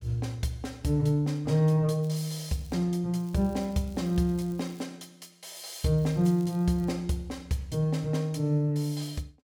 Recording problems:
crackle; at 2 s, from 3 to 5 s and at 6 s; loose cable, SNR 27 dB

